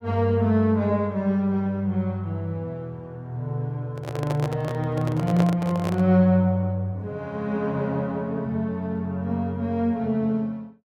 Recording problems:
microphone handling noise; from 4 to 6 s; peak 0 dB vs average level

